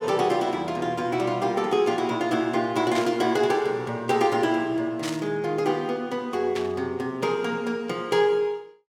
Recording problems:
static burst; at 3 s, at 5 s and at 6.5 s; peak -4 dB vs average level

